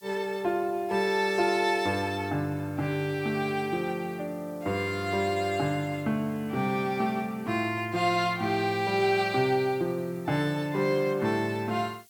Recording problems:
hiss; SNR 27 dB

